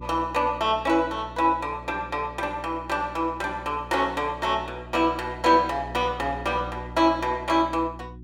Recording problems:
hum; 60 Hz, harmonics up to 360 Hz, SNR 17 dB

